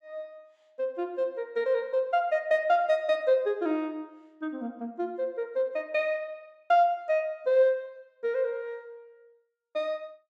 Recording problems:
none

